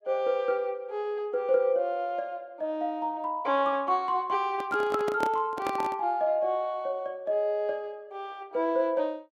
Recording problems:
microphone handling noise; from 4.5 to 6 s; peak +1 dB vs average level

